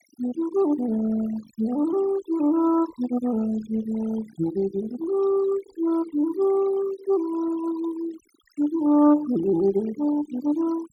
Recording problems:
denoising artefacts; signal-to-artefact ratio 18 dB

